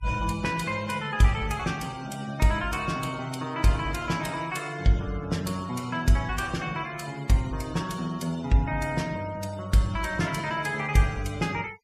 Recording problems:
noise reduction artefacts; signal-to-artefact ratio 19 dB

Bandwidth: 15 kHz